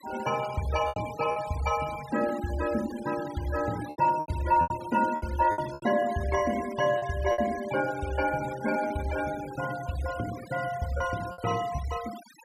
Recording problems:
denoising artefacts; signal-to-artefact ratio 15 dB
lost packets; 6% of the sound replaced, filled with repeated pitch periods

